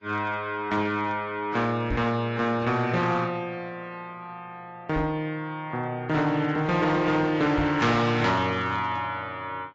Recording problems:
codec artefacts; AAC, log-spectral distance 2 dB, nothing above 7.3 kHz
distorted audio; hard clipping, signal-to-distortion ratio 12 dB
microphone bump; at 2 s, at 5 s and at 7.5 s; peak -2 dB vs average level

